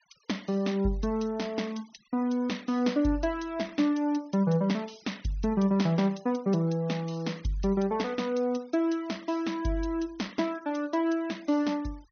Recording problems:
treble missing; nothing above 6.4 kHz
noise reduction artefacts; signal-to-artefact ratio 25 dB

